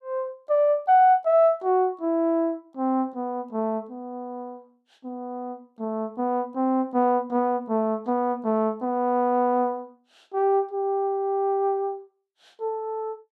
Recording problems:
none

